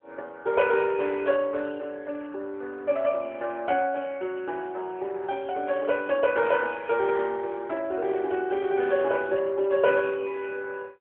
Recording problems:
telephone audio; 300 Hz to 3.3 kHz, AMR-NB

